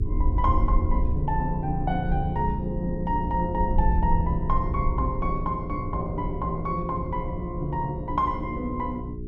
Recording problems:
electrical hum; 60 Hz, harmonics up to 420 Hz, SNR 7 dB
rumble; below 70 Hz, SNR 3 dB

